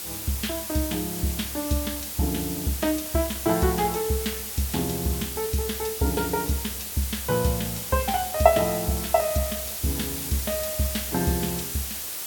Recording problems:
hiss; slope 0 dB per octave, SNR 4 dB

